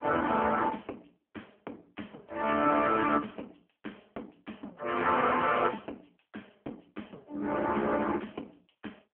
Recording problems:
telephone audio; 240 Hz to 3.3 kHz, AMR-NB

